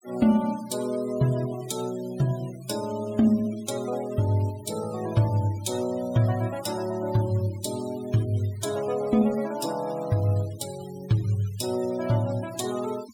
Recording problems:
denoising artefacts; signal-to-artefact ratio 18 dB

